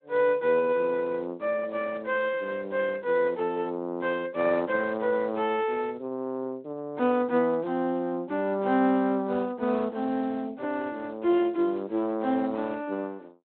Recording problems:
phone line; 170 Hz to 3.9 kHz, Speex

